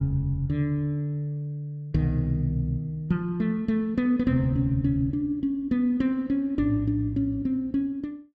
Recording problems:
none

